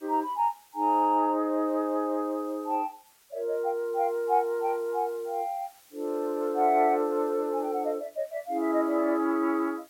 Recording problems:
background hiss; slope +1 dB per octave, SNR 28 dB

